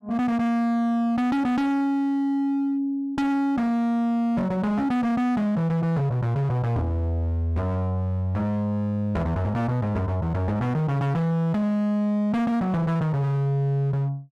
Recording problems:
distorted audio; hard clipping, signal-to-distortion ratio 8 dB

